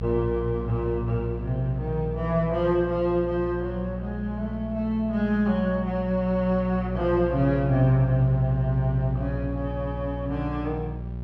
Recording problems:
mains hum; 60 Hz, harmonics up to 600 Hz, SNR 7 dB

